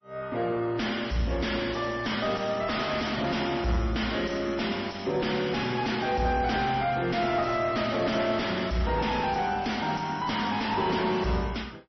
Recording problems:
lossy codec; MP3, log-spectral distance 4 dB, nothing above 5.8 kHz
distorted audio; soft clipping, signal-to-distortion ratio 7 dB

